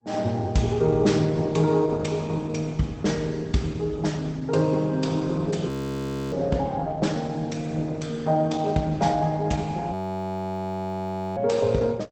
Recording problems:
lossy compression; Opus, log-spectral distance 3 dB
audio freezing; at 5.5 s for 0.5 s and at 10 s for 1.5 s

